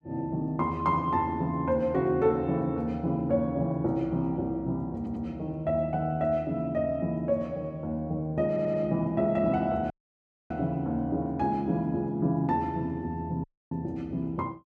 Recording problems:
audio stuttering; at 5 s and at 8.5 s
dropout; at 10 s for 0.5 s and at 13 s

